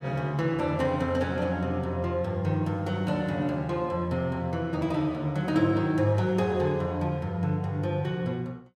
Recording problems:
none

